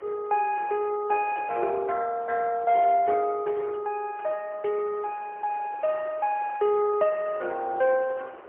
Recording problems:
phone line; 320 Hz to 2.2 kHz, AMR-NB, then MP3
wind noise; below 1.2 kHz, SNR 22 dB

